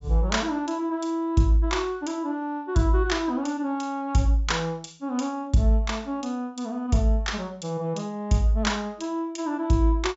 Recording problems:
treble missing; nothing above 8 kHz

